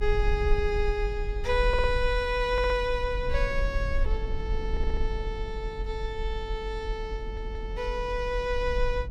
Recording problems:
rumble; below 48 Hz, SNR 3 dB
wind noise; below 320 Hz, SNR 16 dB
stutter; 4 times, first at 1.5 s

